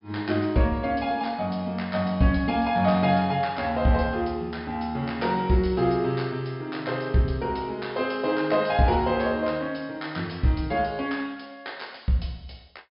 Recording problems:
treble missing; nothing above 5.5 kHz

